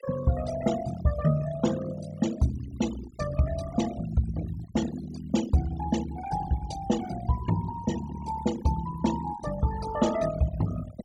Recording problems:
denoising artefacts; signal-to-artefact ratio 13 dB

